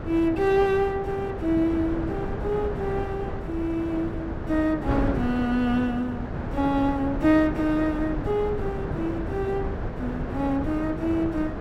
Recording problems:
wind noise; below 470 Hz, SNR 6 dB

